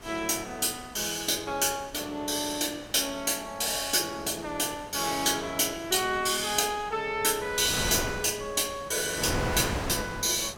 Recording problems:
wind noise; below 1.3 kHz, SNR 11 dB

